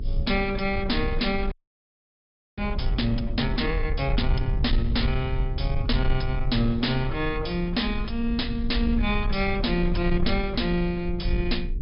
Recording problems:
treble cut off; nothing above 5.5 kHz
distortion; soft clipping, signal-to-distortion ratio 10 dB
hum; 50 Hz, harmonics up to 450 Hz, SNR 17 dB
rumble; below 62 Hz, SNR 4 dB
audio freezing; at 1.5 s for 1 s

